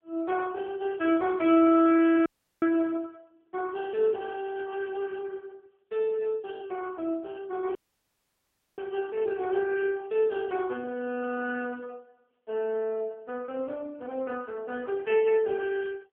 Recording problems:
telephone audio; 260 Hz to 2.7 kHz, AMR-NB
dropout; at 2.5 s and at 8 s for 1 s

